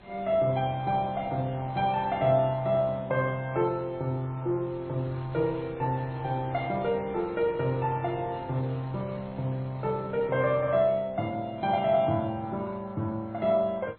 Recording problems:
lossy codec; MP2, then MP3, log-spectral distance 2 dB, nothing above 3.6 kHz
wind noise; below 1.5 kHz, SNR 22 dB

